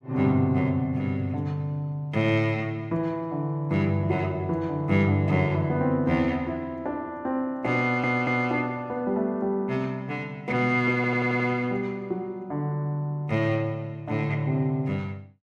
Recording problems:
stutter; at 8 s and at 11 s

